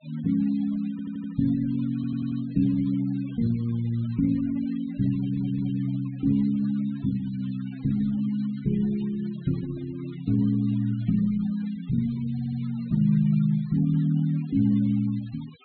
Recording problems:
treble cut off; nothing above 4.2 kHz
noise reduction artefacts; signal-to-artefact ratio 25 dB
audio stuttering; 4 times, first at 1 s

